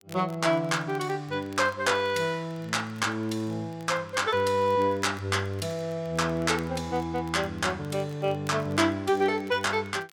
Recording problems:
crackle; vinyl, SNR 28 dB

